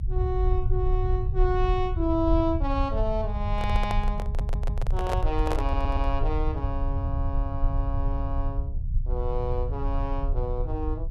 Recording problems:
low-frequency rumble; below 78 Hz, strongest tone 32 Hz, SNR -2 dB
handling noise; from 3.5 to 6 s; peak +3 dB vs average level
audio stuttering; at 4.5 s and at 5.5 s

